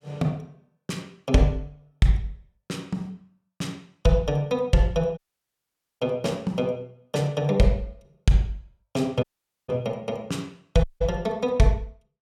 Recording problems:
dropout; at 5 s for 1 s, at 9 s and at 11 s

